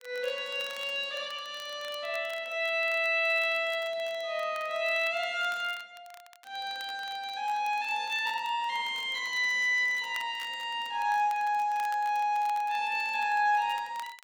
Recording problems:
crackling; vinyl, SNR 23 dB

